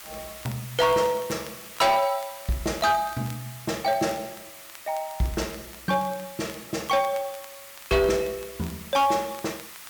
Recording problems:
distortion; hard clipping, uneven, signal-to-distortion ratio 11 dB
background hiss; SNR 15 dB
crackle; vinyl, SNR 23 dB

